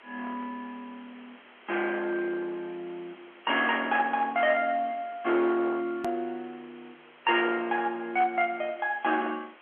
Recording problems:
phone line; 300 Hz to 3.3 kHz, G.711
distortion; hard clipping, signal-to-distortion ratio 15 dB
hiss; SNR 24 dB
click at an edit; at 6 s

